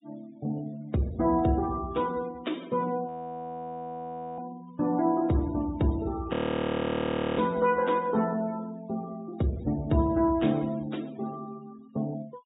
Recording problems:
treble cut off; nothing above 4 kHz
denoising artefacts; signal-to-artefact ratio 22 dB
audio freezing; at 3 s for 1.5 s and at 6.5 s for 1 s

